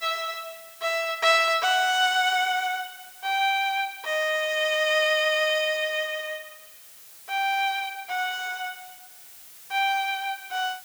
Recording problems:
hiss; slope +1 dB per octave, SNR 20 dB

